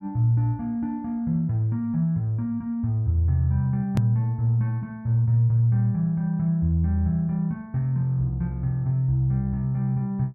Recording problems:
edit click; at 4 s

